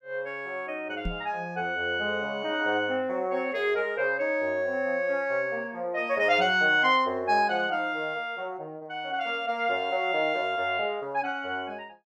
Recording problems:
microphone thump; at 1 s; peak -2 dB vs average level

